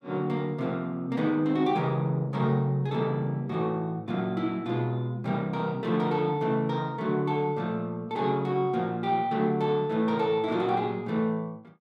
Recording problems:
none

